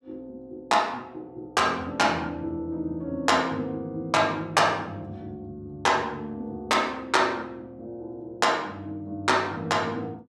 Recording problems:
none

